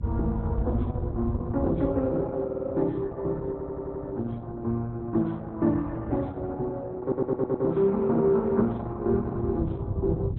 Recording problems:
lossy compression; MP3, then Opus, log-spectral distance 2 dB, nothing above 3.9 kHz
wind on the microphone; below 110 Hz, SNR 6 dB
audio stuttering; at 2.5 s, at 3.5 s and at 7 s

